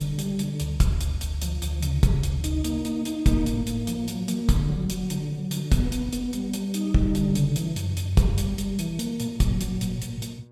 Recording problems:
electrical hum; 60 Hz, harmonics up to 1.1 kHz, SNR 27 dB

